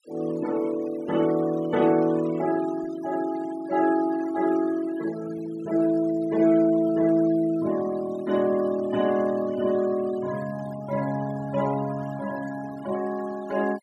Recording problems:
noise reduction artefacts; signal-to-artefact ratio 18 dB

